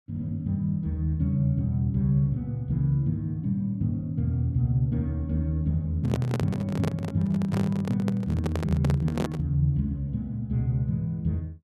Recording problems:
microphone handling noise; from 6 to 9.5 s; peak +1 dB vs average level

